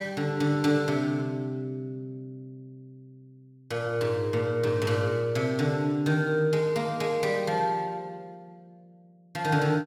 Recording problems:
none

